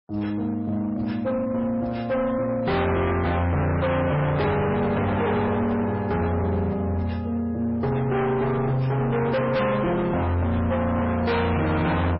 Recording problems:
lossy compression; MP3, log-spectral distance 2 dB, nothing above 4.8 kHz
distorted audio; hard clipping, signal-to-distortion ratio 6 dB

